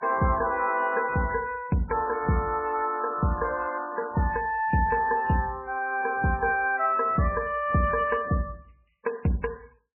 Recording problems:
lossy codec; MP3, log-spectral distance 5 dB, nothing above 2.4 kHz

